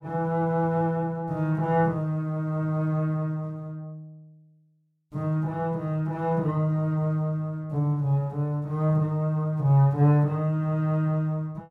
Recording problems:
none

